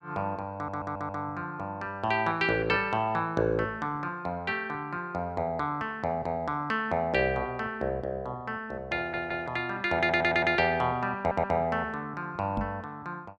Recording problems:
stutter; 4 times, first at 0.5 s
knock on the microphone; at 13 s; peak +1 dB vs average level

